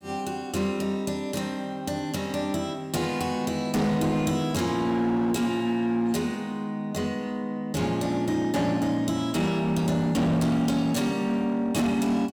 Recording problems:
distorted audio; hard clipping, signal-to-distortion ratio 10 dB

